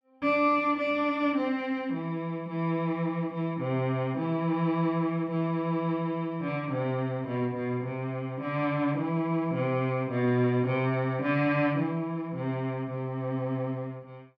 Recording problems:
none

